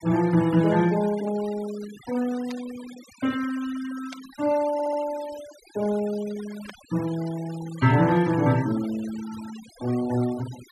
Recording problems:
denoising artefacts; signal-to-artefact ratio 17 dB
burst of static; at 2.5 s, at 4 s and at 6.5 s; peak -12 dB vs average level
audio stuttering; at 4.5 s

